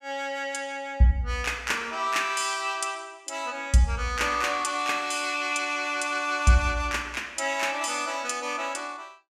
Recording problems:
none

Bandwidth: 15.5 kHz